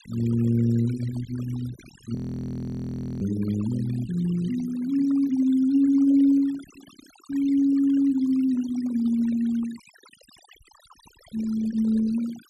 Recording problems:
noise reduction artefacts; signal-to-artefact ratio 20 dB
frozen audio; at 2 s for 1 s

